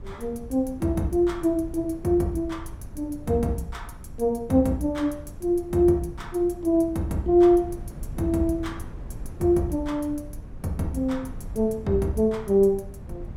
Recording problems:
wind noise; below 130 Hz, SNR 16 dB

